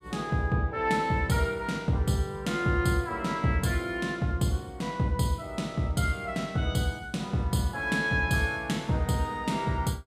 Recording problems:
none

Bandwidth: 15 kHz